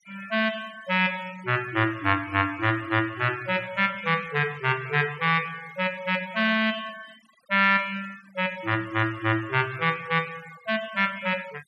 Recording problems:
denoising artefacts; signal-to-artefact ratio 21 dB

